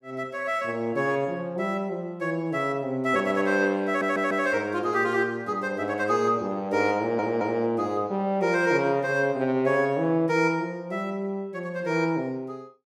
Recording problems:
stutter; at 4 s and at 7 s

